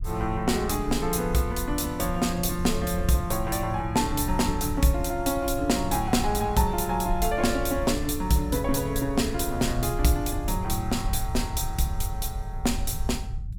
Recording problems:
low-frequency rumble; below 80 Hz, SNR 8 dB

